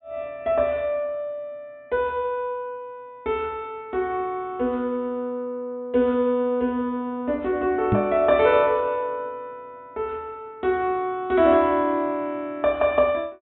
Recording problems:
low-pass filter; nothing above 3.7 kHz
microphone bump; at 8 s; peak +5 dB vs average level

